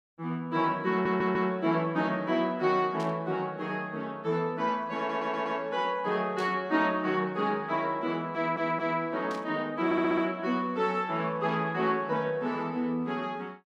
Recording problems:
stutter; 4 times, first at 1 s
burst of static; at 3 s, at 6.5 s and at 9.5 s; peak -11 dB vs average level

